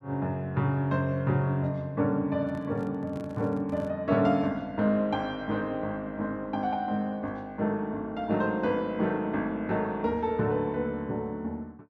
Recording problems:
handling noise; from 2.5 to 4 s; peak -11 dB vs average level

